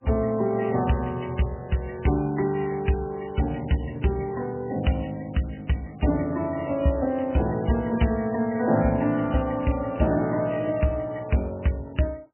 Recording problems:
lossy compression; MP3, log-spectral distance 6 dB, nothing above 3 kHz

